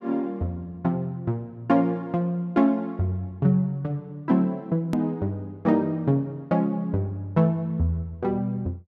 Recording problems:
edit click; at 5 s

